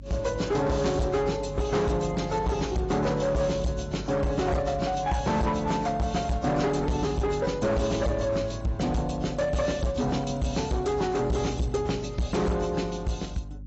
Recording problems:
lossy compression; AAC, log-spectral distance 4 dB, nothing above 7.3 kHz
distortion; hard clipping, signal-to-distortion ratio 7 dB
hum; 50 Hz, harmonics up to 300 Hz, SNR 15 dB

